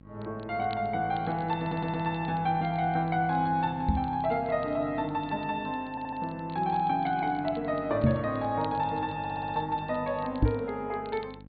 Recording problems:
treble cut off; nothing above 4.5 kHz
electrical hum; 50 Hz, harmonics up to 850 Hz, SNR 19 dB
crackling; vinyl, SNR 27 dB
stutter; at 1.5 s, at 6 s and at 9 s
microphone bump; at 4 s, at 8 s and at 10 s; peak +9 dB vs average level

